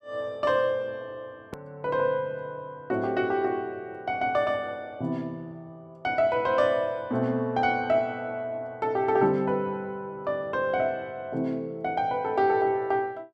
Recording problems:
hard cut with a click; at 1.5 s

